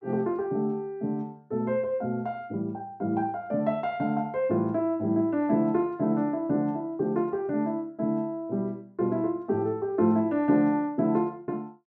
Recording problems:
none

